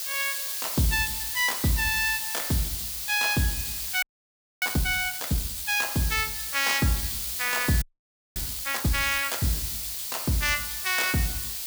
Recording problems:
hiss; slope +4 dB per octave, SNR 2 dB
audio freezing; at 4 s for 0.5 s and at 8 s for 0.5 s

